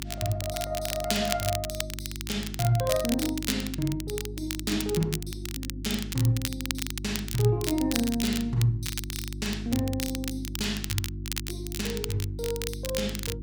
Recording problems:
hum; 50 Hz, harmonics up to 350 Hz, SNR 8 dB
crackling; vinyl, SNR 6 dB

